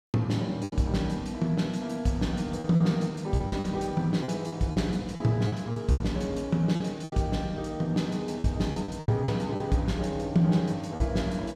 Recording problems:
packet loss; 9% of the sound replaced, filled with repeated pitch periods

